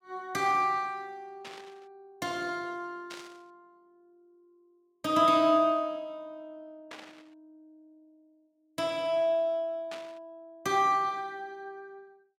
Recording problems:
burst of static; 4 times, first at 1.5 s; peak -10 dB vs average level

